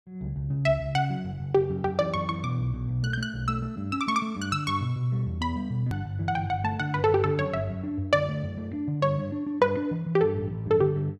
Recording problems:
click at an edit; at 6 s

